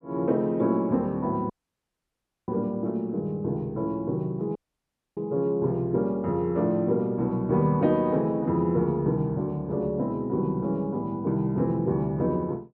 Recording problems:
dropout; at 1.5 s for 1 s and at 4.5 s for 0.5 s

